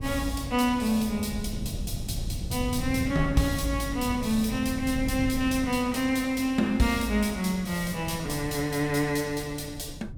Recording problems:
wind on the microphone; below 150 Hz, SNR 10 dB

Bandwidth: 17 kHz